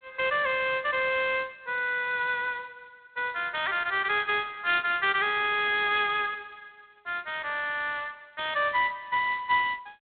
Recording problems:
telephone audio; 340 Hz to 3.6 kHz, G.726

